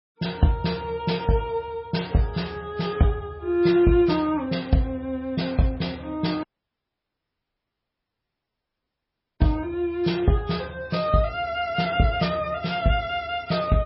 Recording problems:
lossy compression; MP3, log-spectral distance 3 dB, nothing above 5 kHz
dropout; at 6.5 s for 3 s

